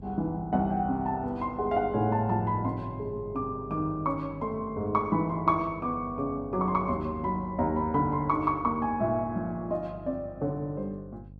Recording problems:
electrical hum; 50 Hz, harmonics up to 550 Hz, SNR 17 dB

